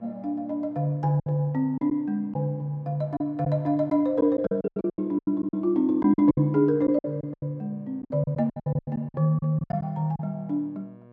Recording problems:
hum; 60 Hz, harmonics up to 1.7 kHz, SNR 27 dB
packet loss; 13% of the sound replaced, filled with silence

